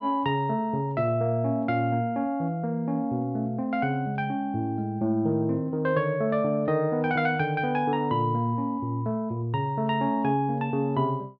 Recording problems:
none

